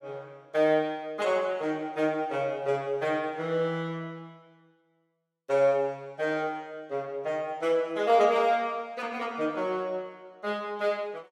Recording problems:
none

